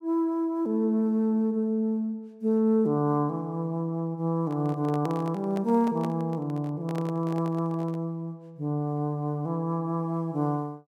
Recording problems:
microphone handling noise; from 4.5 to 8 s; peak -6 dB vs average level

